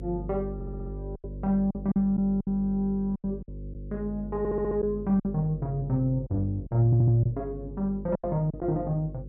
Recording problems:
hum; 50 Hz, harmonics up to 550 Hz, SNR 12 dB
packet loss; 8% of the sound replaced, filled with silence
audio stuttering; at 0.5 s, at 4.5 s and at 7 s

